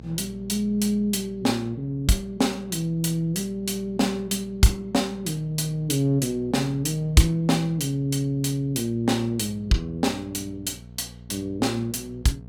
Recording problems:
hum; 60 Hz, harmonics up to 720 Hz, SNR 20 dB

